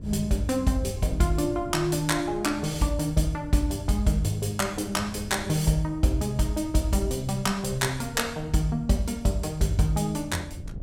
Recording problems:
wind on the microphone; below 140 Hz, SNR 15 dB

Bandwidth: 17 kHz